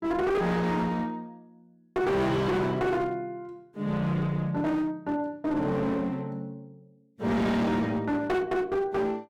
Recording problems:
distorted audio; hard clipping, uneven, signal-to-distortion ratio 7 dB

